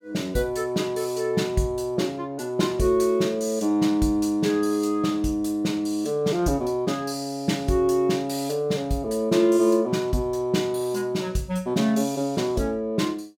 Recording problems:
none

